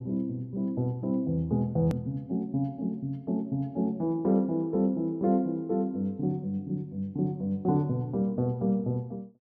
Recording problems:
hard cut with a click; at 2 s

